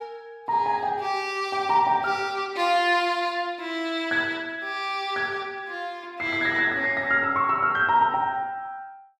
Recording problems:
none

